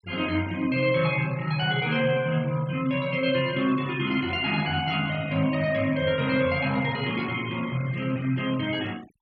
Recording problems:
noise reduction artefacts; signal-to-artefact ratio 19 dB

